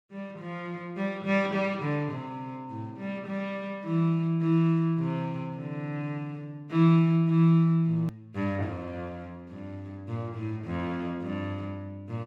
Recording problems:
edit click; at 8 s

